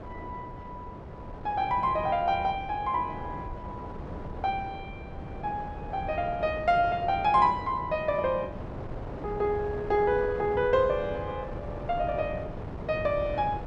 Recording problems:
wind on the microphone; below 540 Hz, SNR 11 dB

